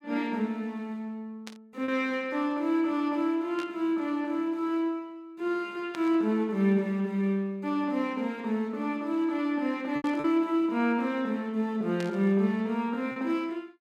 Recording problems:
lost packets; 1.5% of the sound replaced, filled with repeated pitch periods
burst of static; 5 times, first at 1.5 s; peak -9 dB vs average level

